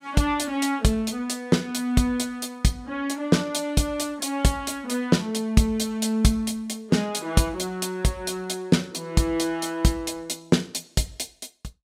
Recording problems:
none

